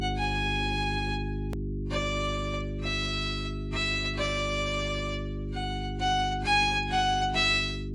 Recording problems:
codec artefacts; AAC, log-spectral distance 2 dB, nothing above 10.7 kHz
electrical hum; 50 Hz, harmonics up to 400 Hz, SNR 6 dB
hard cut with a click; at 1.5 s

